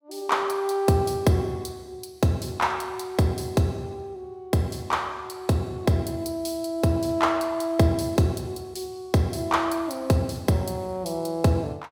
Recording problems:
none

